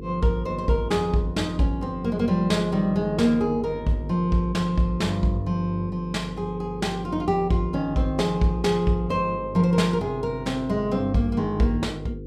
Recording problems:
hum; 50 Hz, harmonics up to 500 Hz, SNR 13 dB

